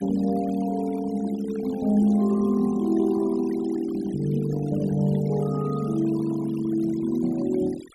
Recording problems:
noise reduction artefacts; signal-to-artefact ratio 20 dB

